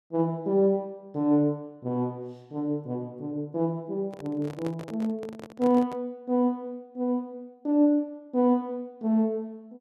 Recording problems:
handling noise; from 4 to 6 s; peak -7 dB vs average level

